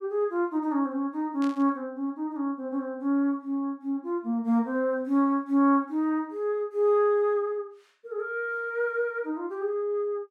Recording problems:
burst of static; at 1.5 s; peak -12 dB vs average level

